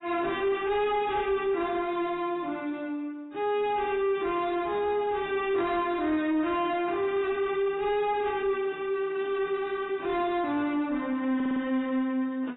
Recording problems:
lossy codec; AAC, log-spectral distance 2 dB, nothing above 3.8 kHz
distorted audio; soft clipping, signal-to-distortion ratio 11 dB
audio stuttering; at 11 s

